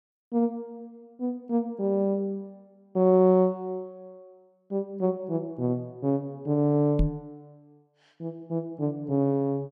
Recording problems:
microphone thump; at 7 s; peak +6 dB vs average level

